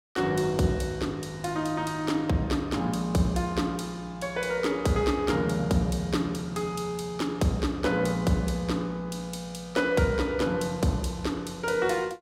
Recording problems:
none

